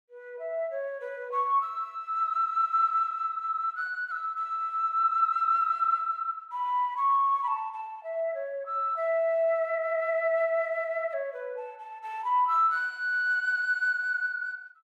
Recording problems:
none

